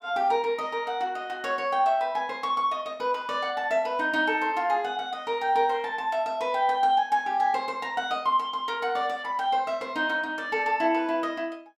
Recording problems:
none

